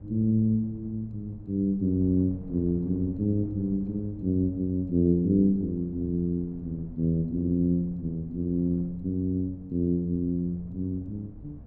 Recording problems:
wind noise; below 170 Hz, SNR 19 dB

